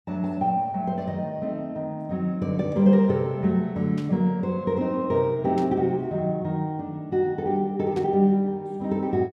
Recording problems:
static burst; at 4 s, at 5.5 s and at 8 s; peak -13 dB vs average level

